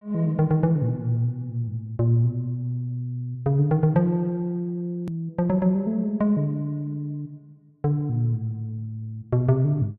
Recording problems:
hard cut with a click; at 5 s

